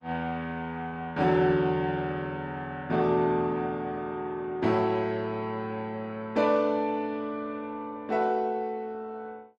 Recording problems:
lossy codec; Opus, log-spectral distance 2 dB

